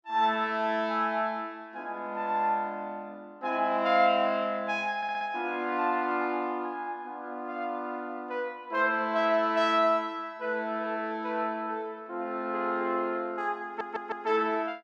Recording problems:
stutter; at 5 s and at 14 s

